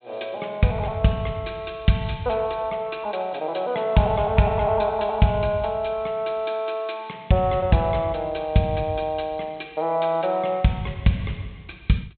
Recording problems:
treble cut off; nothing above 4 kHz

